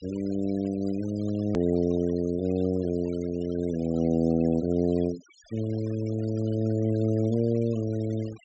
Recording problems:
treble missing; nothing above 8 kHz
noise reduction artefacts; signal-to-artefact ratio 21 dB
edit click; at 1.5 s

